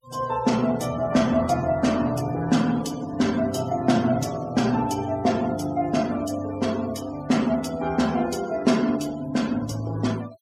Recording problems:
denoising artefacts; signal-to-artefact ratio 19 dB

